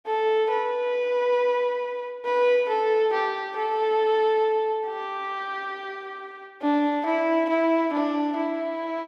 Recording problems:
none

